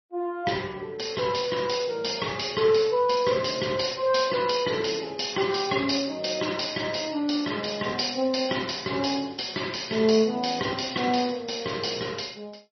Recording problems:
lossy codec; MP3, log-spectral distance 10 dB, nothing above 5.8 kHz

